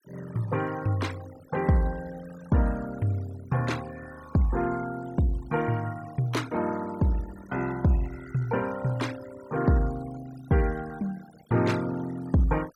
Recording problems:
denoising artefacts; signal-to-artefact ratio 19 dB

